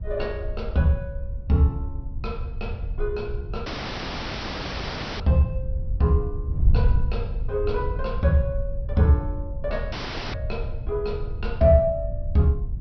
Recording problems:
low-pass filter; nothing above 5.7 kHz
wind noise; below 82 Hz, SNR 6 dB
audio cutting out; at 3.5 s for 1.5 s and at 10 s

